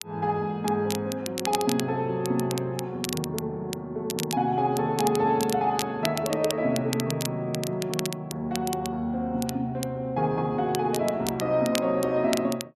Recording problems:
crackling; vinyl, SNR 9 dB

